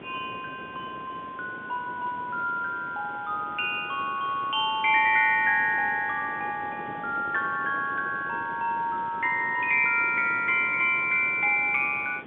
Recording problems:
telephone audio; 130 Hz to 4 kHz, G.711
hiss; SNR 27 dB
wind on the microphone; below 680 Hz, SNR 19 dB

